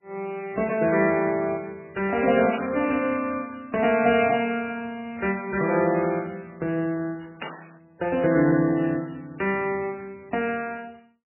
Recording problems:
codec artefacts; MP3, log-spectral distance 4 dB, nothing above 2.4 kHz
burst of static; at 2.5 s, at 5.5 s and at 7.5 s; peak -3 dB vs average level

